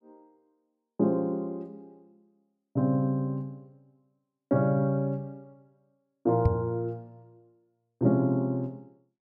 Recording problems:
knock on the microphone; at 6.5 s; peak +7 dB vs average level

